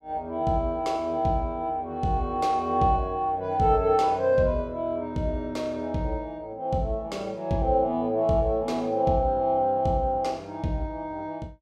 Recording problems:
none

